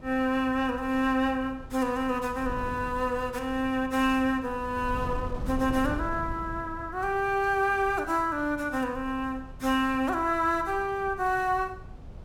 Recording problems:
wind on the microphone; below 150 Hz, SNR 14 dB

